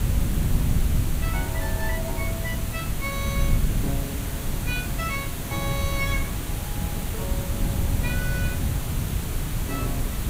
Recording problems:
hiss; slope -3 dB per octave, SNR 0 dB
low-frequency rumble; below 70 Hz, SNR 2 dB
wind on the microphone; below 140 Hz, SNR -4 dB

